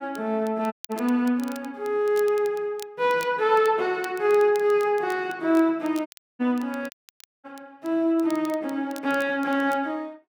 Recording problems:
crackle; vinyl, SNR 23 dB
dropout; at 0.5 s, at 6 s and at 7 s for 0.5 s

